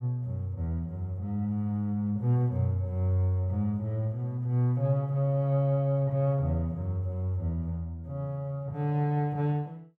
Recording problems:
none

